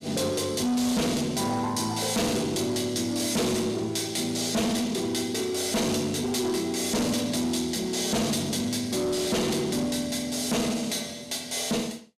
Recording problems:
distorted audio; soft clipping, signal-to-distortion ratio 6 dB

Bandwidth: 14.5 kHz